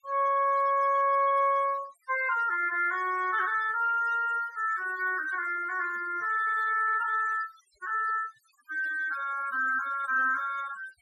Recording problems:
denoising artefacts; signal-to-artefact ratio 19 dB

